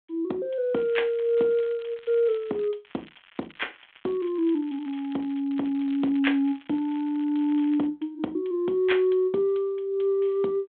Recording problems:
telephone audio; 190 Hz to 3.4 kHz, G.726
crackle; from 1 to 2.5 s and from 3 to 8 s; loose cable, SNR 26 dB

